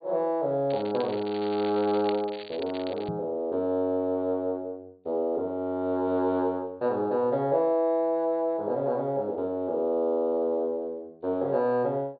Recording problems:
low-pass filter; nothing above 4.6 kHz
crackle; from 0.5 to 3 s; loose cable, SNR 17 dB
microphone thump; at 3 s; peak -3 dB vs average level

